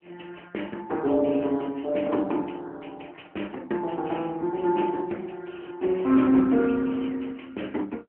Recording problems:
phone line; 220 Hz to 3.2 kHz, AMR-NB

